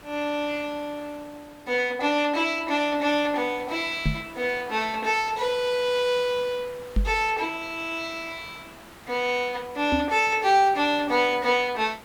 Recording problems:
background hiss; SNR 21 dB
microphone thump; at 4 s, at 7 s and at 10 s; peak +3 dB vs average level

